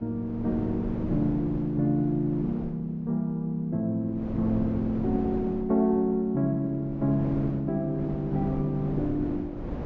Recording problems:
treble missing; nothing above 7.4 kHz
wind on the microphone; below 390 Hz, SNR 10 dB

